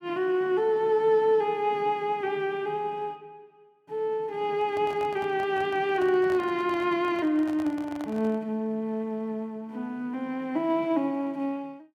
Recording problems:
handling noise; from 4.5 to 8.5 s; peak -11 dB vs average level

